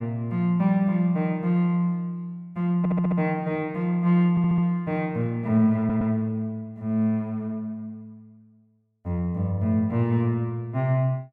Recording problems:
stutter; at 3 s, at 4.5 s and at 6 s

